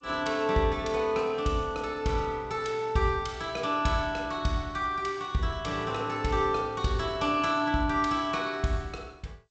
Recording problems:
lossy codec; G.722, log-spectral distance 2 dB, nothing above 7.6 kHz

